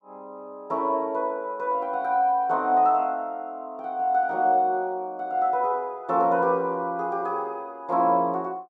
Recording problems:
none

